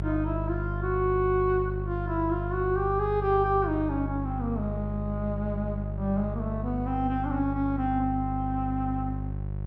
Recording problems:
mains hum; 50 Hz, harmonics up to 550 Hz, SNR 4 dB

